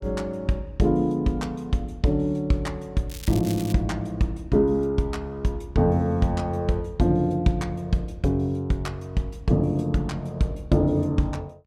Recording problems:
crackling; at 3 s; loose cable, SNR 15 dB

